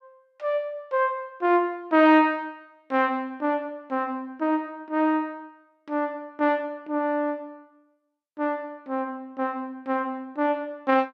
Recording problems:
none

